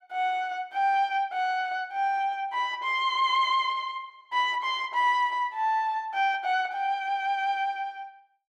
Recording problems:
none

